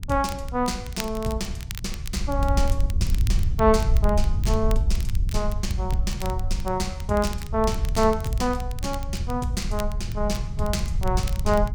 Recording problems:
low-frequency rumble; below 94 Hz, SNR 7 dB
wind noise; below 74 Hz, SNR 2 dB
crackling; vinyl, SNR 15 dB

